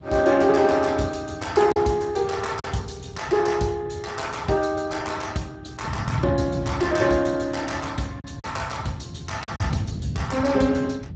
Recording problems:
codec artefacts; Speex, log-spectral distance 5 dB, nothing above 7.6 kHz
wind noise; below 170 Hz, SNR 10 dB
lost packets; 2% of the sound replaced, filled with silence

